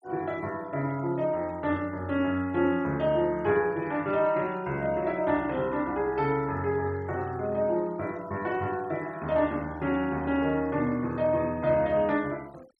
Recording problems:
denoising artefacts; signal-to-artefact ratio 25 dB

